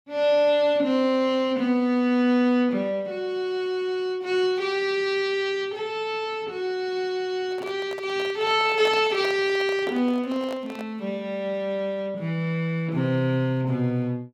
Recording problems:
microphone handling noise; from 7.5 to 11 s; peak -4 dB vs average level

